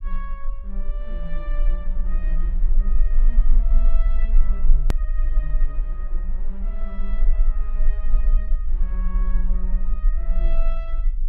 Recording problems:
rumble; below 34 Hz, strongest tone 20 Hz, SNR -16 dB
click at an edit; at 5 s

